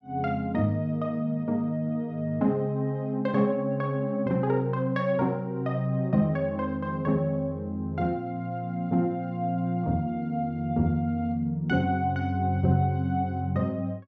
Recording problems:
none

